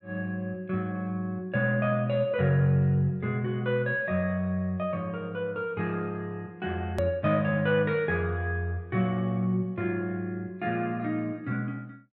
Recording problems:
hard cut with a click; at 7 s

